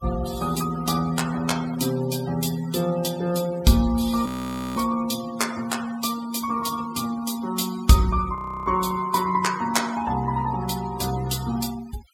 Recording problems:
denoising artefacts; signal-to-artefact ratio 15 dB
audio freezing; at 4.5 s for 0.5 s and at 8.5 s

